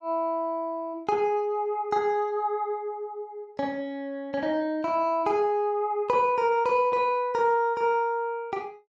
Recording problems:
none

